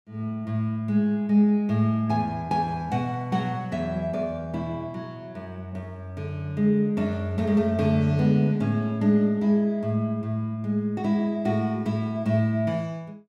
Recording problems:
none

